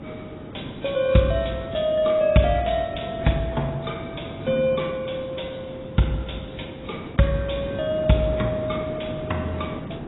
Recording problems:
codec artefacts; AAC, log-spectral distance 6 dB, nothing above 3.8 kHz
background hiss; SNR 12 dB

